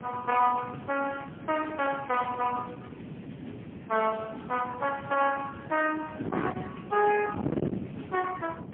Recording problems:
phone line; 240 Hz to 3.2 kHz, AMR-NB, then MP3
distortion; soft clipping, signal-to-distortion ratio 11 dB
wind noise; below 440 Hz, SNR 10 dB

